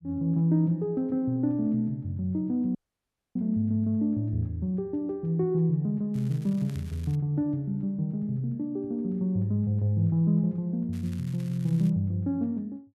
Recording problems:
audio cutting out; at 3 s for 0.5 s
crackling; from 6 to 7 s and at 11 s; loose cable, SNR 26 dB

